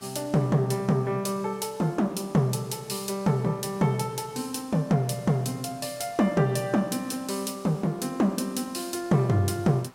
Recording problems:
hiss; SNR 27 dB

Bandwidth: 16 kHz